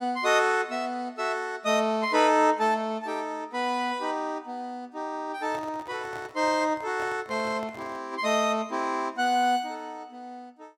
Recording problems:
handling noise; from 5.5 to 8 s; peak -10 dB vs average level

